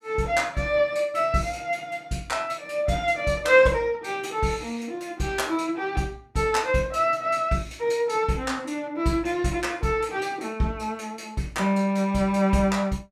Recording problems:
none

